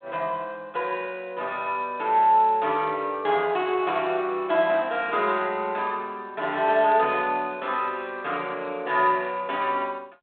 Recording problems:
phone line; 260 Hz to 3.8 kHz, G.726

